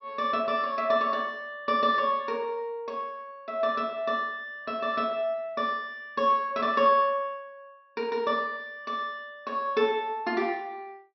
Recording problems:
treble missing; nothing above 5.8 kHz

